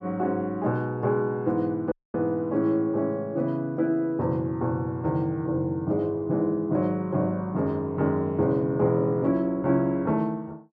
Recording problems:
audio cutting out; at 2 s

